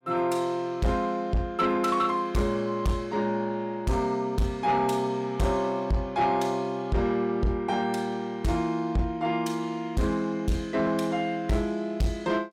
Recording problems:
distorted audio; soft clipping, signal-to-distortion ratio 12 dB

